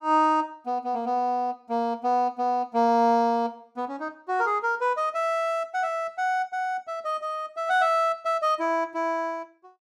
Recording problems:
none

